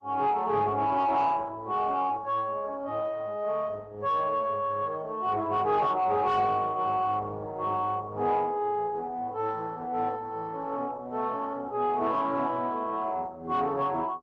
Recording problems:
codec artefacts; Opus, log-spectral distance 2 dB
distorted audio; soft clipping, signal-to-distortion ratio 10 dB

